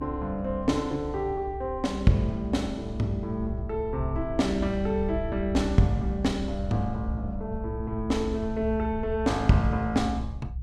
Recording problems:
low-frequency rumble; below 82 Hz, strongest tone 64 Hz, SNR 8 dB

